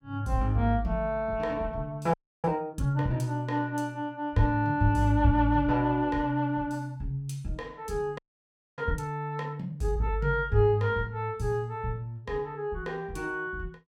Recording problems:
audio freezing; at 2 s and at 8 s for 0.5 s

